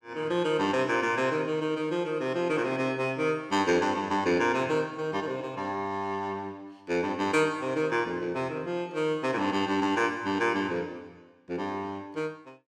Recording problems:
none

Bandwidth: 17 kHz